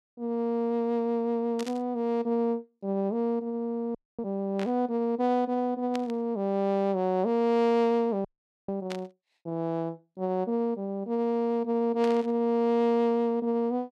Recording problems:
burst of static; 5 times, first at 1.5 s; peak -7 dB vs average level
audio freezing; at 4 s and at 8.5 s

